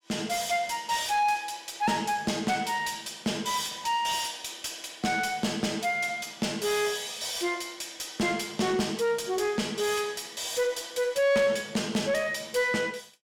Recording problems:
distorted audio; soft clipping, signal-to-distortion ratio 11 dB

